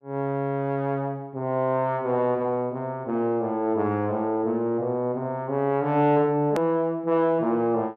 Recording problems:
hard cut with a click; at 6.5 s

